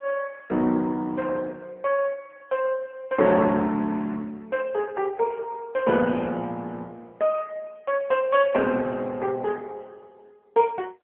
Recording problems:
phone line; 170 Hz to 3.3 kHz, AMR-NB

